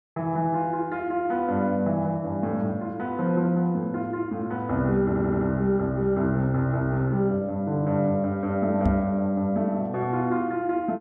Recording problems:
audio stuttering; at 5 s
microphone bump; at 9 s; peak +4 dB vs average level

